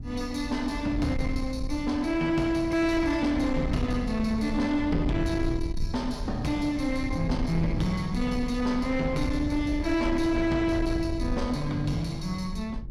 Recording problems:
distorted audio; soft clipping, signal-to-distortion ratio 12 dB
low-frequency rumble; below 110 Hz, SNR 7 dB

